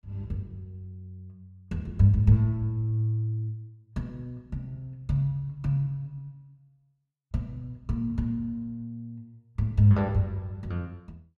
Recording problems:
none

